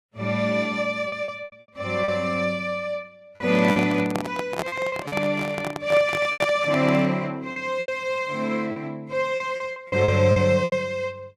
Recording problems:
codec artefacts; Vorbis, log-spectral distance 2 dB, nothing above 12.3 kHz
lost packets; 9% of the sound replaced, filled with repeated pitch periods
handling noise; from 3.5 to 7 s; peak 0 dB vs average level

